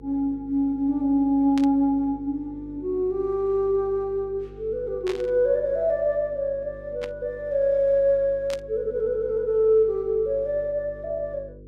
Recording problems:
electrical hum; 50 Hz, harmonics up to 500 Hz, SNR 21 dB
burst of static; 4 times, first at 1.5 s; peak -8 dB vs average level

